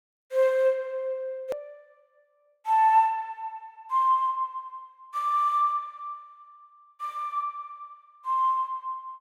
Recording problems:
hard cut with a click; at 1.5 s

